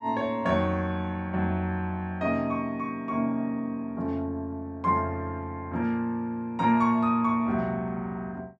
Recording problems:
none

